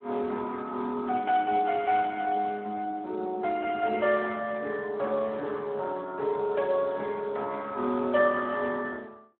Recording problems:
telephone audio; 240 Hz to 3 kHz, Speex

